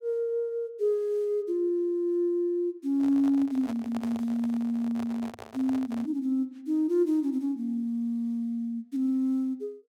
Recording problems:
microphone handling noise; from 3 to 6 s; peak -8 dB vs average level

